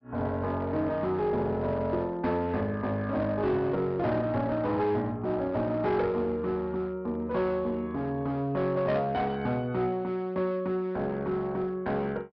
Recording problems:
treble cut off; nothing above 5.5 kHz
distorted audio; hard clipping, uneven, signal-to-distortion ratio 11 dB

